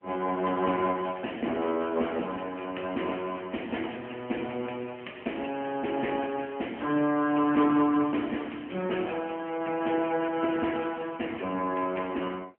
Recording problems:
telephone audio; 220 Hz to 3.1 kHz, AMR-NB

